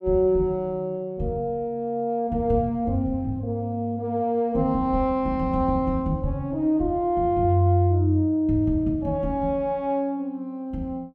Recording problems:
none

